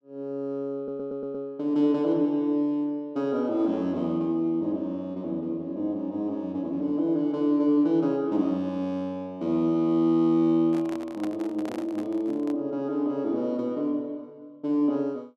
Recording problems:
audio stuttering; at 1 s
handling noise; from 11 to 13 s; peak -6 dB vs average level

